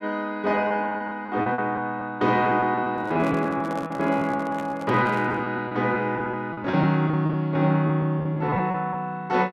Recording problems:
lost packets; 12% of the sound replaced, filled with repeated pitch periods
microphone handling noise; from 3 to 5.5 s; peak -7 dB vs average level

